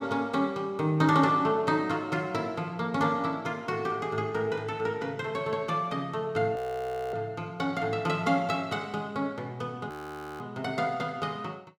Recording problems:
audio freezing; at 6.5 s for 0.5 s and at 10 s for 0.5 s

